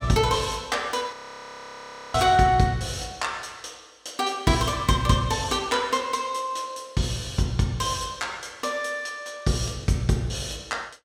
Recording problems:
audio freezing; at 1 s for 1 s

